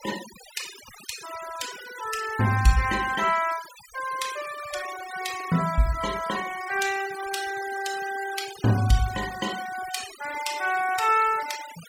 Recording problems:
denoising artefacts; signal-to-artefact ratio 12 dB

